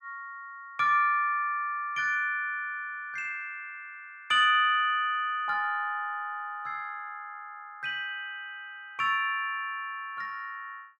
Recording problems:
none

